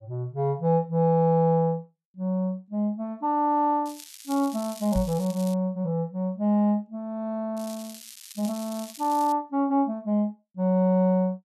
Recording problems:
crackle; from 4 to 5.5 s and from 7.5 to 9.5 s; loose cable, SNR 17 dB
knock on the microphone; at 5 s; peak -2 dB vs average level

